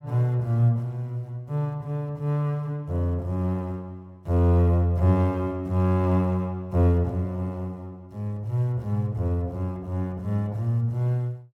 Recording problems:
none

